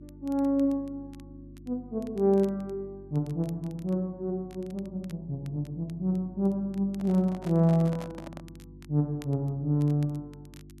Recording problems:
hum; 50 Hz, harmonics up to 350 Hz, SNR 20 dB
crackle; vinyl, SNR 30 dB
handling noise; from 7 to 8.5 s; peak -9 dB vs average level

